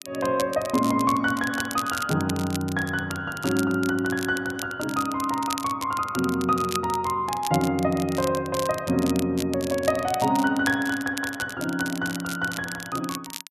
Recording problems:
crackling; vinyl, SNR 12 dB

